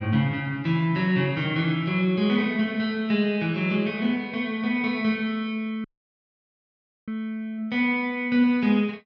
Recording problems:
audio cutting out; at 6 s for 1 s

